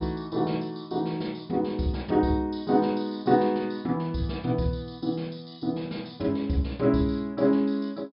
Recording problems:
treble missing; nothing above 5.5 kHz

